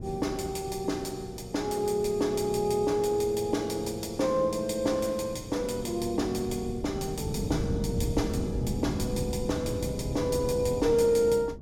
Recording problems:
wind on the microphone; below 230 Hz, SNR 8 dB

